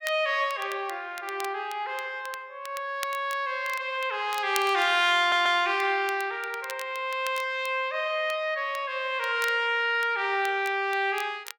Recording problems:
crackle; vinyl, SNR 17 dB
stutter; at 5 s

